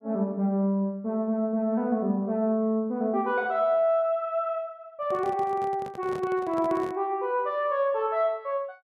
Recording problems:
handling noise; from 5 to 7 s; peak -9 dB vs average level

